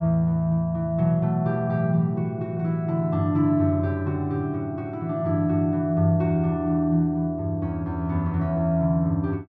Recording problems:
none

